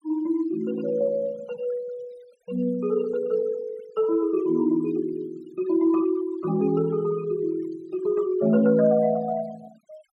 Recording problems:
denoising artefacts; signal-to-artefact ratio 23 dB

